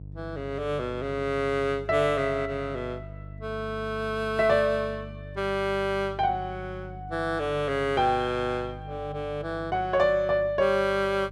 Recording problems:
hum; 50 Hz, harmonics up to 450 Hz, SNR 15 dB

